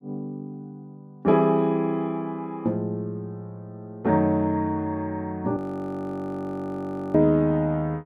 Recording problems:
frozen audio; at 5.5 s for 1.5 s

